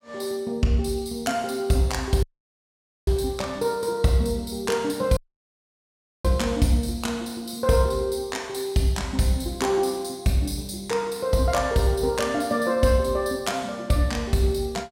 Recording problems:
dropout; at 2 s for 1 s and at 5 s for 1 s

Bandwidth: 16 kHz